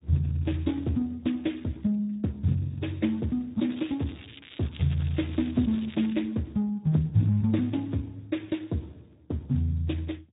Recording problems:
treble cut off; nothing above 3.8 kHz
lossy compression; Speex, log-spectral distance 5 dB
crackling; from 3.5 to 6 s; loose cable, SNR 17 dB

